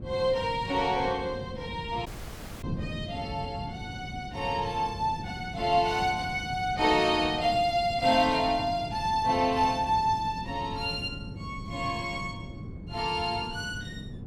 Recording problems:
wind on the microphone; below 230 Hz, SNR 11 dB
audio cutting out; at 2 s for 0.5 s

